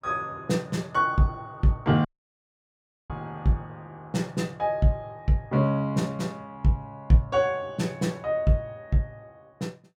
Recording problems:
audio cutting out; at 2 s for 1 s

